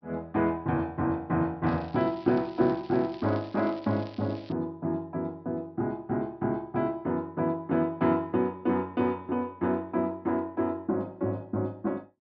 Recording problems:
treble missing; nothing above 5.5 kHz
crackling; from 1.5 to 4.5 s; loose cable, SNR 24 dB

